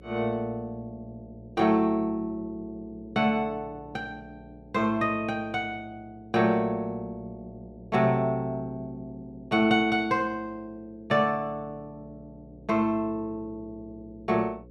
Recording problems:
mains hum; 60 Hz, harmonics up to 540 Hz, SNR 23 dB

